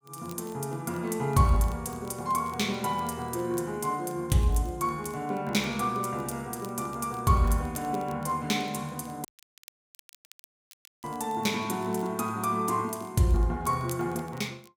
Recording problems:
crackling; vinyl, SNR 26 dB
audio cutting out; at 9.5 s for 2 s

